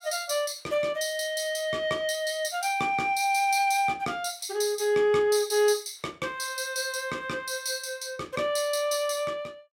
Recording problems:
none

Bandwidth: 16.5 kHz